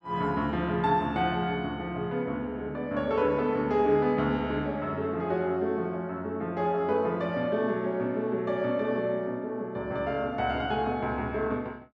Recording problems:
none

